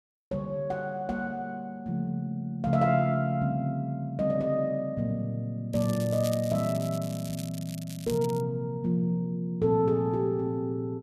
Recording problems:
crackle; from 5.5 to 8.5 s; loose cable, SNR 15 dB

